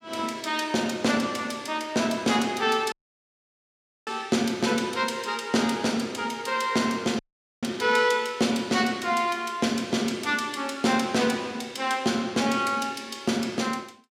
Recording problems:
dropout; at 3 s for 1 s and at 7 s

